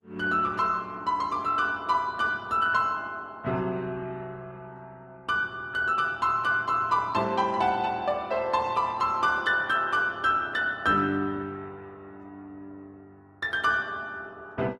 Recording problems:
codec artefacts; Opus, log-spectral distance 2 dB, nothing above 13.1 kHz

